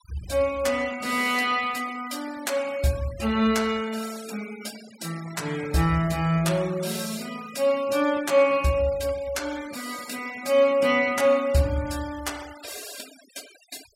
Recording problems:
noise reduction artefacts; signal-to-artefact ratio 19 dB

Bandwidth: 16 kHz